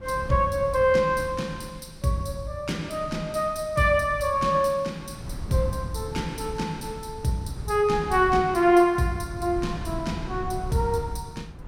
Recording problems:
wind noise; below 150 Hz, SNR 14 dB

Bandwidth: 17 kHz